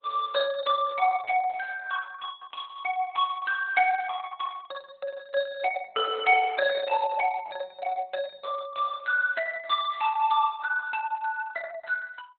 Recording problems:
lossy codec; Opus, log-spectral distance 3 dB, nothing above 3.8 kHz

